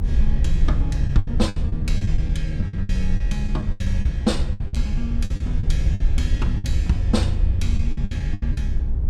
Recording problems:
low-frequency rumble; below 62 Hz, SNR -2 dB
packet loss; 13% of the sound replaced, filled with the last packet

